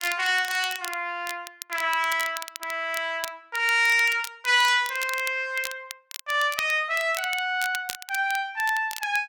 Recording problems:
crackle; vinyl, SNR 13 dB

